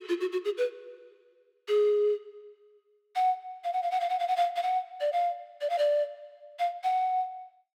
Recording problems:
none

